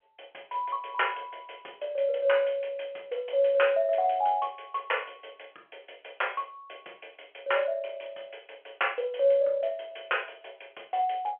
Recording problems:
telephone audio; 320 Hz to 3.3 kHz, G.711

